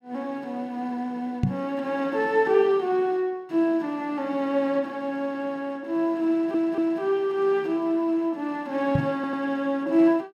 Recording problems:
microphone thump; at 1.5 s and at 9 s; peak +6 dB vs average level
stutter; at 6.5 s and at 9 s

